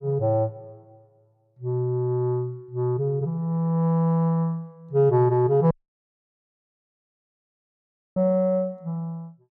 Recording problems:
dropout; at 5.5 s for 2.5 s

